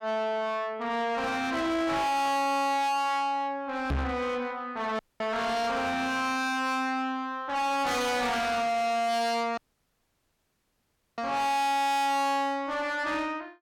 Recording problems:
distorted audio; soft clipping, signal-to-distortion ratio 6 dB
microphone bump; at 4 s; peak +2 dB vs average level
dropout; at 5 s and at 9.5 s for 1.5 s

